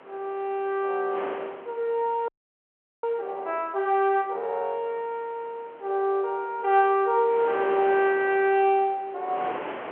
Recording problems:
telephone audio; 320 Hz to 3.5 kHz, G.711
wind on the microphone; below 1.4 kHz, SNR 16 dB
frozen audio; at 2.5 s for 1 s

